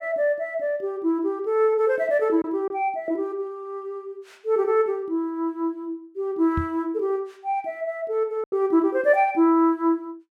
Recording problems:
packet loss; 1.2% of the sound replaced, filled with silence
microphone bump; at 6.5 s; peak 0 dB vs average level

